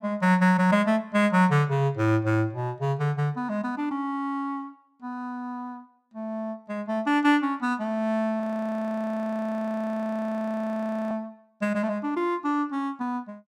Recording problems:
frozen audio; at 8.5 s for 2.5 s

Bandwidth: 16.5 kHz